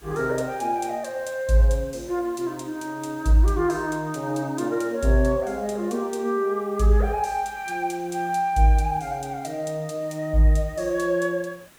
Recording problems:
background hiss; slope -3 dB per octave, SNR 27 dB

